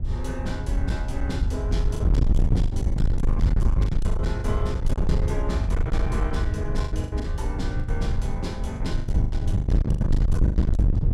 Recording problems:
distortion; hard clipping, signal-to-distortion ratio 7 dB
wind noise; below 100 Hz, SNR -8 dB
packet loss; 11% of the sound replaced, filled with the last packet

